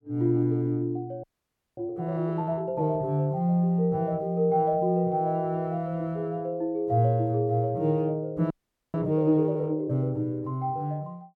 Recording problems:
frozen audio; at 1 s for 0.5 s and at 8.5 s

